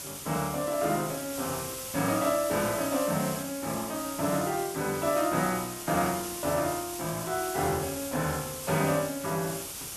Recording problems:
hiss; SNR 7 dB

